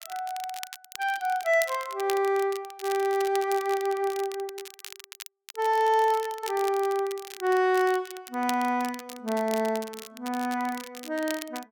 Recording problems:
crackling; vinyl, SNR 15 dB

